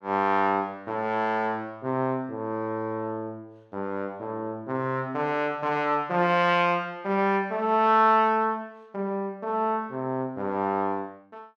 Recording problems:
none

